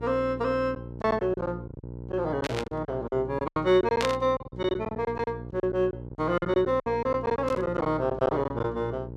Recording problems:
mains hum; 60 Hz, harmonics up to 600 Hz, SNR 12 dB
packet loss; 13% of the sound replaced, filled with silence
static burst; at 2.5 s, at 4 s and at 7.5 s; peak +2 dB vs average level

